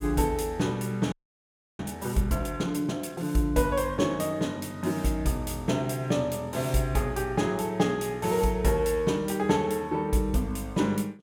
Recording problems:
frozen audio; at 1 s for 0.5 s

